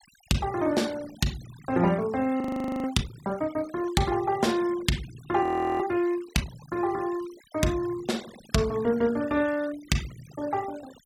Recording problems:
noise reduction artefacts; signal-to-artefact ratio 19 dB
audio freezing; at 2.5 s and at 5.5 s

